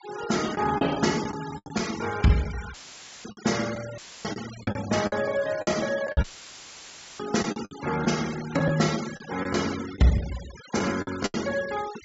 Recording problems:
low-pass filter; nothing above 8 kHz
noise reduction artefacts; signal-to-artefact ratio 12 dB
packet loss; 10% of the sound replaced, filled with the last packet
dropout; at 2.5 s for 0.5 s, at 4 s and at 6 s for 1 s; filled with static

